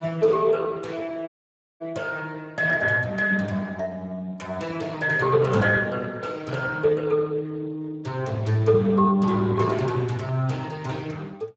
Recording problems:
codec artefacts; Speex, log-spectral distance 3 dB
dropout; at 1.5 s for 0.5 s

